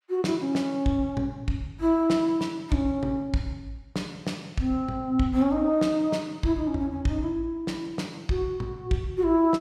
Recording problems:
none

